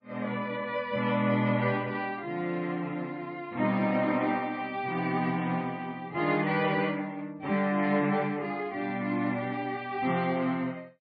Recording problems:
codec artefacts; MP3, log-spectral distance 2 dB, nothing above 4.4 kHz

